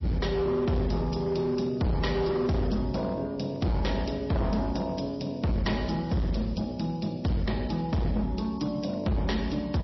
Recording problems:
lossy compression; MP3, log-spectral distance 4 dB, nothing above 5.7 kHz
distortion; hard clipping, signal-to-distortion ratio 6 dB

